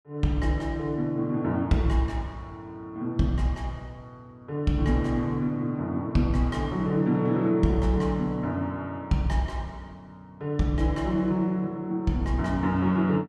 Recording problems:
none

